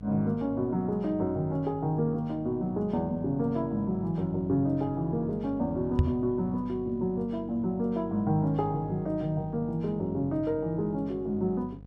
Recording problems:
electrical hum; 50 Hz, harmonics up to 750 Hz, SNR 17 dB
knock on the microphone; at 6 s; peak +9 dB vs average level

